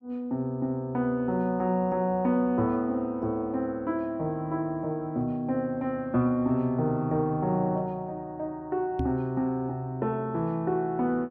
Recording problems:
microphone thump; at 9 s; peak +2 dB vs average level

